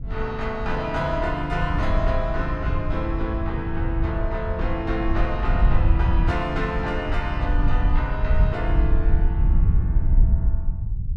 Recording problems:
rumble; below 86 Hz, SNR 5 dB
wind on the microphone; below 72 Hz, SNR -2 dB

